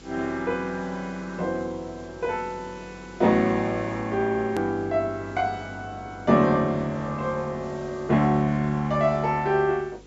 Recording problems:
treble missing; nothing above 8 kHz
electrical hum; 50 Hz, harmonics up to 500 Hz, SNR 24 dB
hiss; SNR 27 dB
edit click; at 4.5 s

